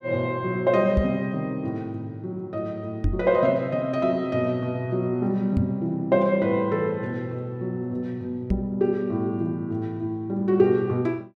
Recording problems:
knock on the microphone; 4 times, first at 1 s; peak +4 dB vs average level

